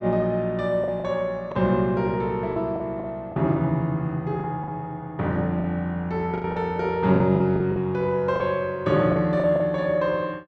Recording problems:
packet loss; 8% of the sound replaced, filled with the last packet

